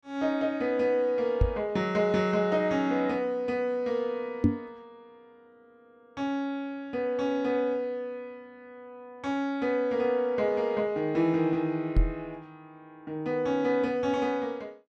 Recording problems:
knock on the microphone; at 1.5 s, at 4.5 s and at 12 s; peak +9 dB vs average level

